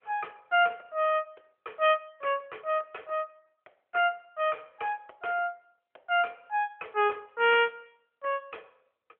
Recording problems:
telephone audio; 370 Hz to 3.3 kHz, AMR-NB

